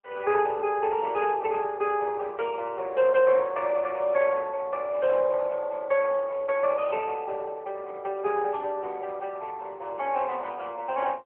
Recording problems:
phone line; 300 Hz to 3.3 kHz, AMR-NB

